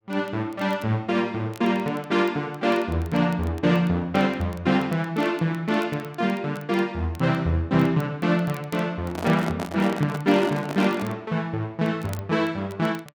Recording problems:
crackle; vinyl, SNR 26 dB
handling noise; from 9 to 11 s; peak -3 dB vs average level

